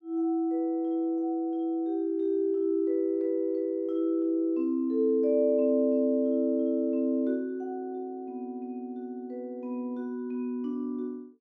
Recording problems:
none

